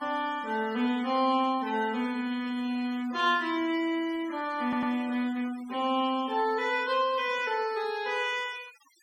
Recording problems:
denoising artefacts; signal-to-artefact ratio 21 dB
stutter; at 4.5 s

